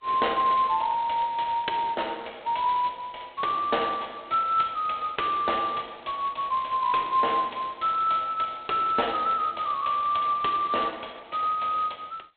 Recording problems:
telephone audio; 340 Hz to 4 kHz, G.726

